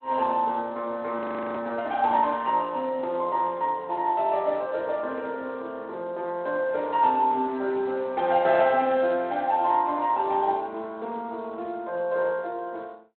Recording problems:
phone line; 300 Hz to 3.8 kHz, Speex
audio freezing; at 1 s

